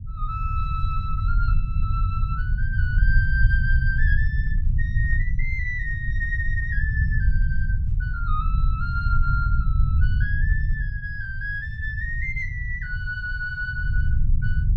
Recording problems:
low-frequency rumble; below 84 Hz, SNR -5 dB

